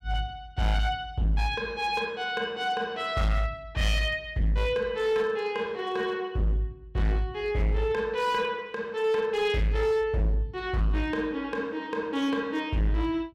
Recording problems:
distortion; hard clipping, signal-to-distortion ratio 10 dB

